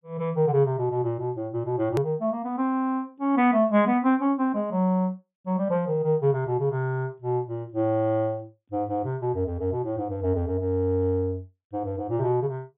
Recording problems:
low-pass filter; nothing above 3.6 kHz
hard cut with a click; at 2 s

